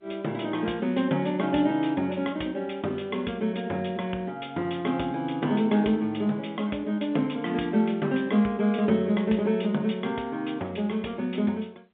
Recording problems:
telephone audio; 170 Hz to 3.6 kHz, G.711

